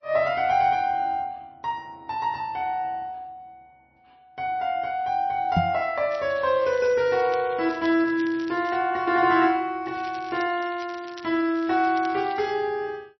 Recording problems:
lossy compression; MP3, log-spectral distance 2 dB, nothing above 5.2 kHz
knock on the microphone; at 5.5 s; peak +4 dB vs average level
crackle; from 6 to 9 s and from 10 to 13 s; loose cable, SNR 22 dB

